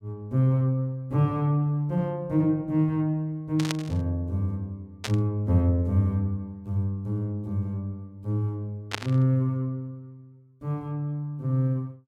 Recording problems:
burst of static; at 3.5 s, at 5 s and at 9 s; peak +2 dB vs average level

